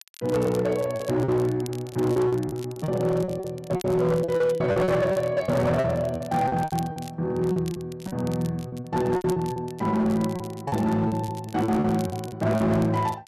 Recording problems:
distortion; hard clipping, signal-to-distortion ratio 12 dB
crackling; vinyl, SNR 21 dB
packet loss; 14% of the sound replaced, filled with repeated pitch periods

